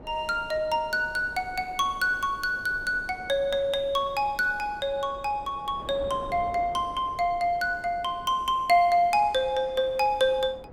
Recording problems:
wind noise; below 600 Hz, SNR 20 dB

